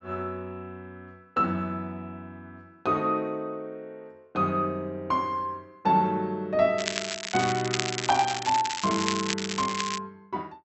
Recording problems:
treble cut off; nothing above 7.9 kHz
crackling; from 7 to 10 s; loose cable, SNR 4 dB

